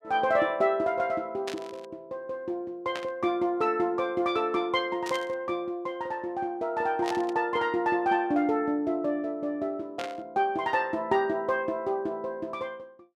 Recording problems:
static burst; 5 times, first at 1.5 s; peak -4 dB vs average level

